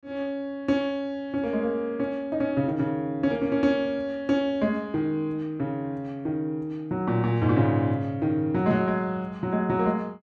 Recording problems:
none

